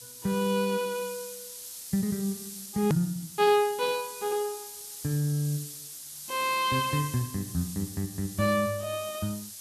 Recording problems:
background hiss; SNR 11 dB
edit click; at 3 s

